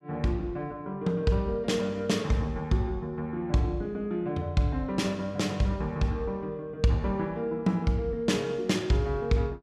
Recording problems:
none

